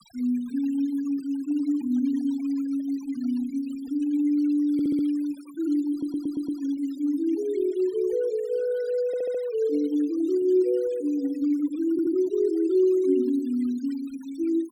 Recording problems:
noise reduction artefacts; signal-to-artefact ratio 26 dB
audio stuttering; 4 times, first at 4.5 s

